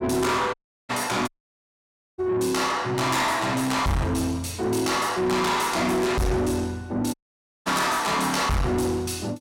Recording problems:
distorted audio; soft clipping, signal-to-distortion ratio 7 dB
dropout; at 0.5 s, at 1.5 s for 1 s and at 7 s for 0.5 s

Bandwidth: 16.5 kHz